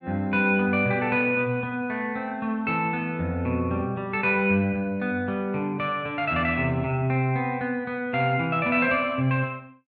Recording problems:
none

